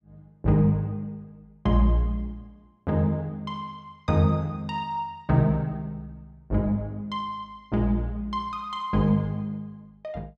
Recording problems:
none

